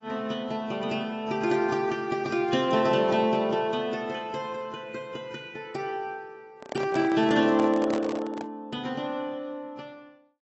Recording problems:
lossy compression; AAC, log-spectral distance 2 dB, nothing above 7.8 kHz
microphone handling noise; from 6.5 to 8.5 s; peak -1 dB vs average level

